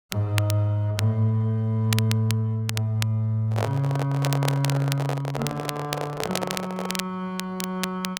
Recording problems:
crackle; vinyl, SNR 9 dB
handling noise; from 3.5 to 7 s; peak +2 dB vs average level

